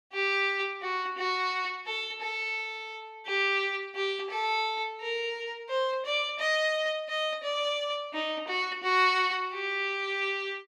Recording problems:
none

